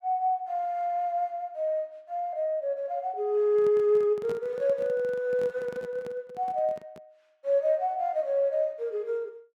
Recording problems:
handling noise; from 3.5 to 7 s; peak -8 dB vs average level

